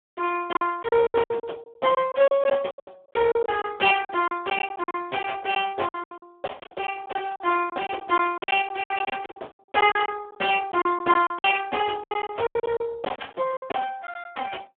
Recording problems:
phone line; 300 Hz to 3.5 kHz, Speex
lost packets; 16% of the sound replaced, filled with silence

